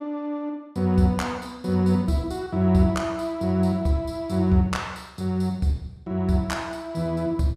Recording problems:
none

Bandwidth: 14.5 kHz